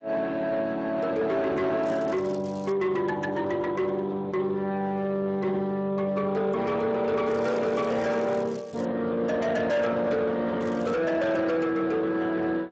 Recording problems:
codec artefacts; Speex, log-spectral distance 3 dB
distorted audio; soft clipping, signal-to-distortion ratio 10 dB
crackle; at 2 s, from 7.5 to 9 s and at 11 s; loose cable, SNR 26 dB

